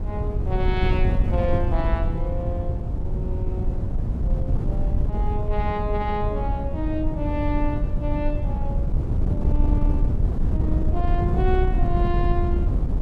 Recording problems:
wind noise; below 98 Hz, SNR -5 dB

